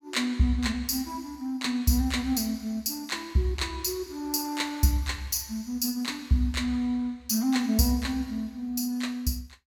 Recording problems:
none

